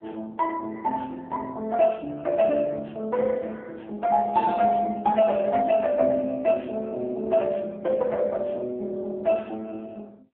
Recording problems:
phone line; 220 Hz to 3.6 kHz, AMR-NB

